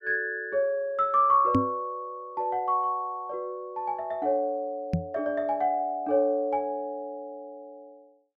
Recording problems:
knock on the microphone; at 1.5 s and at 5 s; peak +7 dB vs average level

